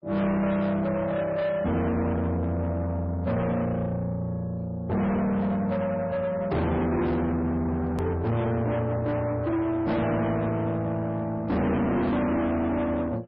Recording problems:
lossy compression; MP3, log-spectral distance 2 dB, nothing above 13.1 kHz
distortion; soft clipping, signal-to-distortion ratio 7 dB
click at an edit; at 8 s

